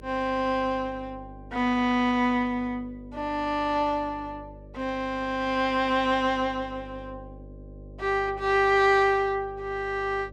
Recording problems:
hum; 50 Hz, harmonics up to 600 Hz, SNR 20 dB

